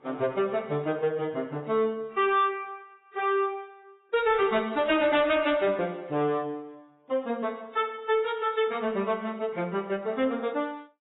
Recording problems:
lossy compression; AAC, log-spectral distance 2 dB, nothing above 3.3 kHz
distorted audio; soft clipping, signal-to-distortion ratio 11 dB

